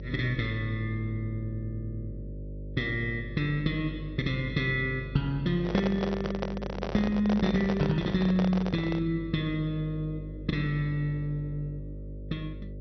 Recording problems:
treble cut off; nothing above 5.9 kHz
hum; 50 Hz, harmonics up to 600 Hz, SNR 11 dB
handling noise; from 5.5 to 9 s; peak +3 dB vs average level

